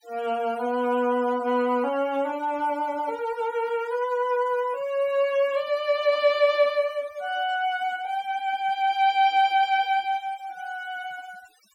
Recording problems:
denoising artefacts; signal-to-artefact ratio 23 dB

